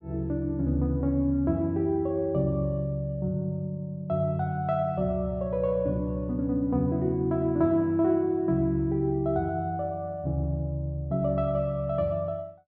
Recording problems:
none

